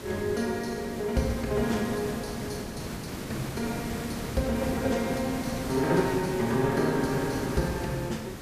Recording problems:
hiss; slope -5 dB per octave, SNR 7 dB

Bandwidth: 14.5 kHz